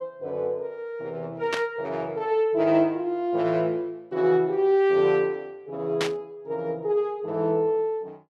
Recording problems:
static burst; at 1.5 s and at 6 s; peak +1 dB vs average level

